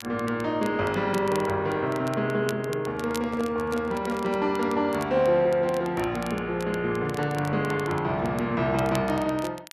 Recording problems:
crackle; vinyl, SNR 19 dB
handling noise; from 3 to 4.5 s; peak -9 dB vs average level

